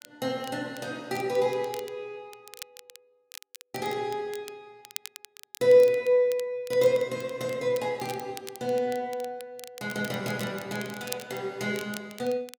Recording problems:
crackling; vinyl, SNR 17 dB

